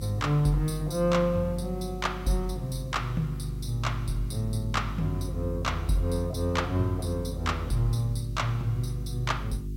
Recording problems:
hum; 50 Hz, harmonics up to 400 Hz, SNR 8 dB
background hiss; slope +6 dB per octave, SNR 30 dB

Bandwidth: 16 kHz